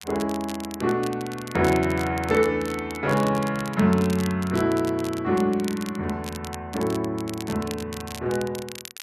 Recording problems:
crackling; vinyl, SNR 15 dB

